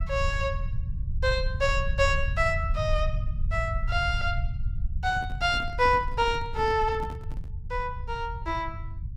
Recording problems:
low-frequency rumble; below 84 Hz, SNR 5 dB
microphone handling noise; from 5 to 7.5 s; peak -9 dB vs average level

